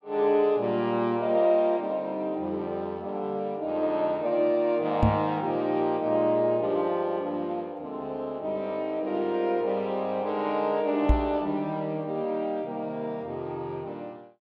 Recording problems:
knock on the microphone; at 5 s and at 11 s; peak +8 dB vs average level

